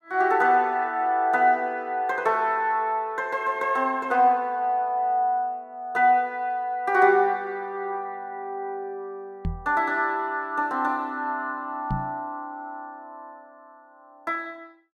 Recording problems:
microphone thump; at 9.5 s and at 12 s; peak -1 dB vs average level

